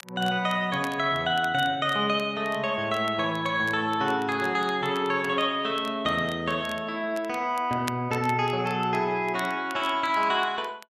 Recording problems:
crackle; vinyl, SNR 21 dB

